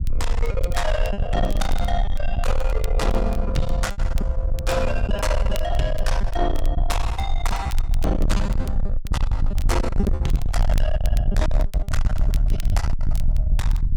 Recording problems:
distorted audio; soft clipping, signal-to-distortion ratio 7 dB
rumble; below 60 Hz, strongest tone 20 Hz, SNR -2 dB
crackle; vinyl, SNR 18 dB
lost packets; 9% of the sound replaced, filled with repeated pitch periods

